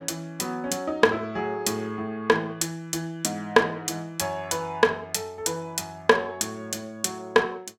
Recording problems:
none

